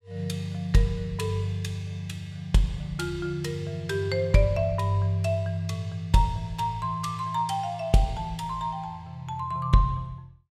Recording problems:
none

